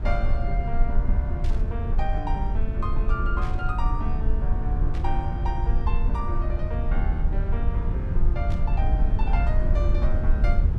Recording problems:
rumble; below 62 Hz, strongest tone 20 Hz, SNR -8 dB
burst of static; 4 times, first at 1.5 s; peak -6 dB vs average level

